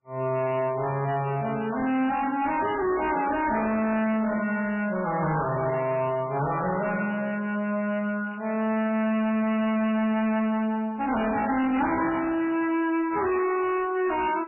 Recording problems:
lossy compression; MP3, log-spectral distance 4 dB, nothing above 2.4 kHz
distortion; hard clipping, signal-to-distortion ratio 7 dB
handling noise; from 2.5 to 4.5 s; peak -8 dB vs average level
crackling; from 5.5 to 7.5 s and from 8.5 to 9.5 s; loose cable, SNR 27 dB

